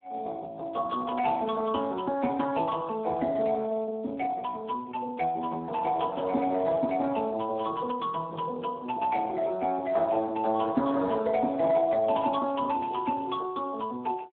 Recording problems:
telephone audio; 260 Hz to 2 kHz, Speex

